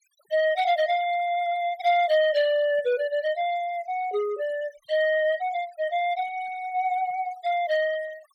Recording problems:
noise reduction artefacts; signal-to-artefact ratio 20 dB

